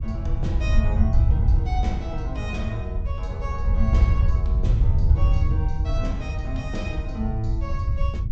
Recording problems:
treble cut off; nothing above 8 kHz
wind on the microphone; below 86 Hz, SNR -8 dB

